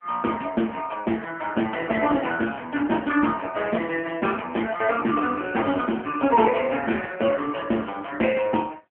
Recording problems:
telephone audio; 190 Hz to 3.2 kHz, AMR-NB

